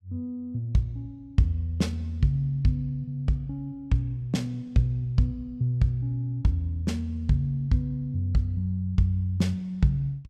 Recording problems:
none

